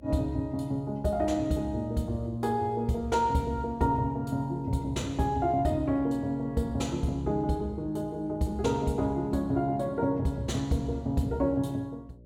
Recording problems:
hum; 60 Hz, harmonics up to 600 Hz, SNR 22 dB

